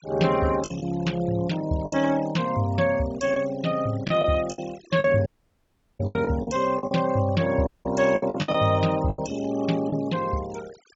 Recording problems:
treble missing; nothing above 7.4 kHz
noise reduction artefacts; signal-to-artefact ratio 18 dB
packet loss; 8% of the sound replaced, filled with the last packet
dropout; at 5.5 s for 0.5 s and at 7.5 s

